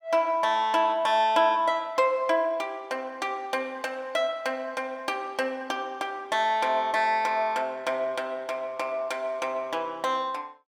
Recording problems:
none

